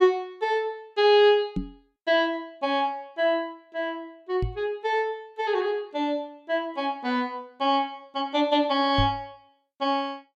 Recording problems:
microphone bump; at 1.5 s, at 4.5 s and at 9 s; peak +2 dB vs average level

